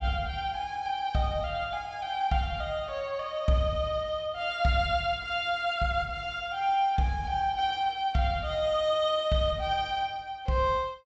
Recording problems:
treble cut off; nothing above 8 kHz

